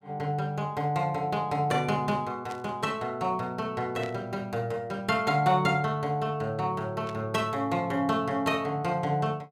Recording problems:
static burst; at 2.5 s, at 4 s and at 7 s; peak -10 dB vs average level

